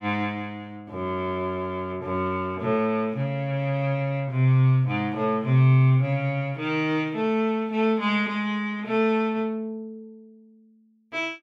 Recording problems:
none

